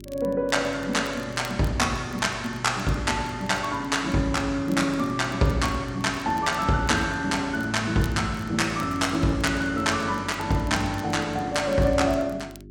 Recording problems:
hum; 50 Hz, harmonics up to 400 Hz, SNR 19 dB
crackle; vinyl, SNR 25 dB

